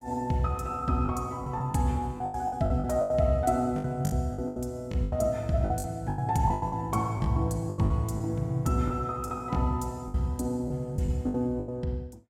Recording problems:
lost packets; 13% of the sound replaced, filled with the last packet

